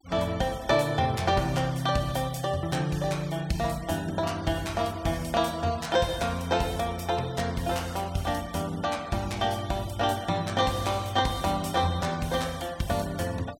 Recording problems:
noise reduction artefacts; signal-to-artefact ratio 20 dB

